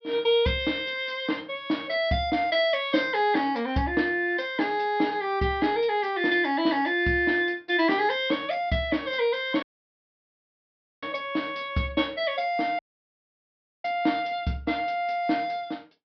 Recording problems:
treble cut off; nothing above 5.5 kHz
dropout; at 9.5 s for 1.5 s and at 13 s for 1 s

